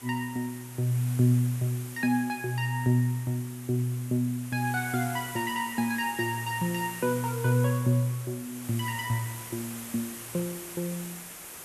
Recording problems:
background hiss; slope -2 dB per octave, SNR 12 dB

